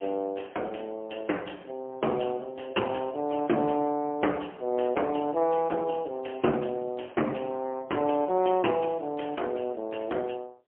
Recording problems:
phone line; 260 Hz to 3.2 kHz, AMR-NB, then MP3

